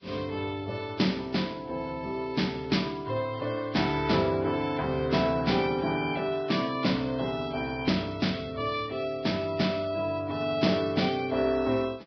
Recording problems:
lossy compression; Vorbis, log-spectral distance 4 dB, nothing above 5.3 kHz

